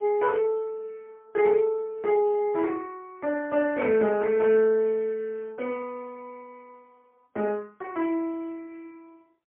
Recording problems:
telephone audio; 260 Hz to 2.7 kHz, AMR-NB, then MP3

